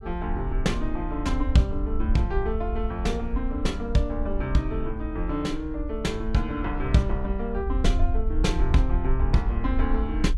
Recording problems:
low-frequency rumble; below 60 Hz, SNR 3 dB

